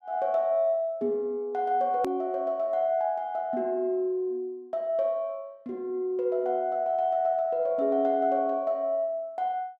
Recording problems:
click at an edit; at 2 s

